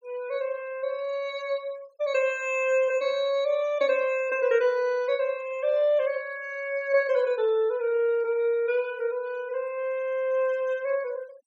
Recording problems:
denoising artefacts; signal-to-artefact ratio 27 dB

